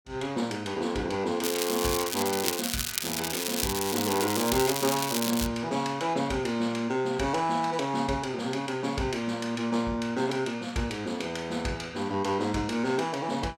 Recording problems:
crackling; from 1.5 to 5.5 s; loose cable, SNR 2 dB

